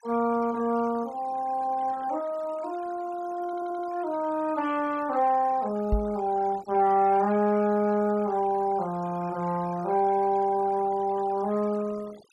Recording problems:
denoising artefacts; signal-to-artefact ratio 21 dB
audio stuttering; at 3.5 s
knock on the microphone; at 6 s; peak +3 dB vs average level

